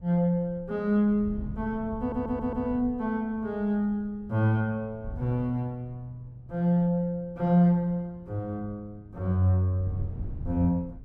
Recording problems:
wind on the microphone; below 130 Hz, SNR 16 dB
audio stuttering; at 2 s

